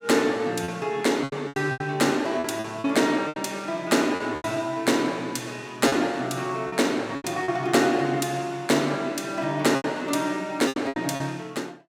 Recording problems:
packet loss; 9% of the sound replaced, filled with repeated pitch periods

